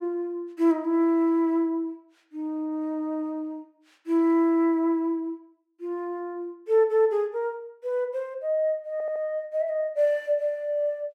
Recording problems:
stutter; at 9 s

